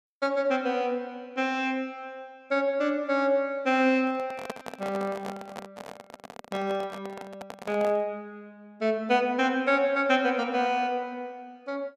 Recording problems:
handling noise; from 4 to 8 s; peak -3 dB vs average level

